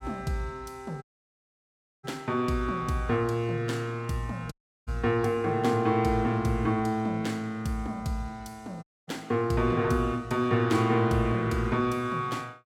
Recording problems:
audio cutting out; at 1 s for 1 s, at 4.5 s and at 9 s

